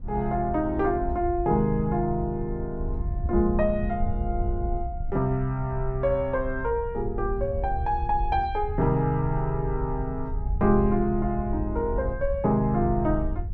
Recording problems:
wind noise; below 72 Hz, SNR 7 dB

